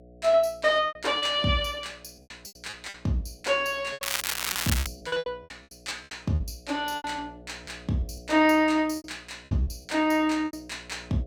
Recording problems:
electrical hum; 60 Hz, harmonics up to 720 Hz, SNR 24 dB
packet loss; 13% of the sound replaced, filled with repeated pitch periods
crackle; at 4 s; loose cable, SNR 2 dB

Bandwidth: 18 kHz